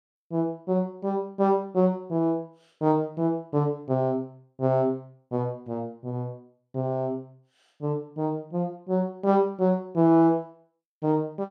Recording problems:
none

